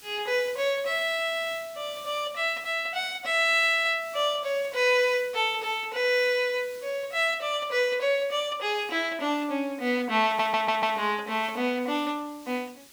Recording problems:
hiss; SNR 23 dB
audio stuttering; at 10 s

